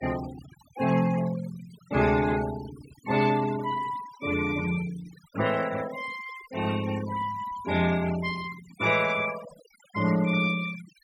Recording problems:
noise reduction artefacts; signal-to-artefact ratio 14 dB

